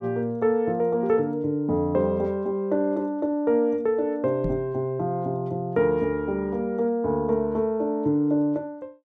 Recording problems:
knock on the microphone; at 4.5 s; peak -2 dB vs average level

